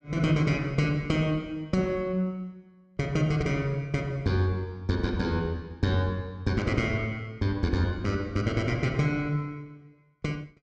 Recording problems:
none

